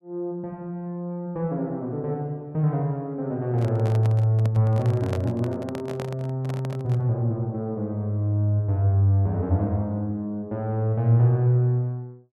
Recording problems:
handling noise; from 3.5 to 7 s; peak -4 dB vs average level

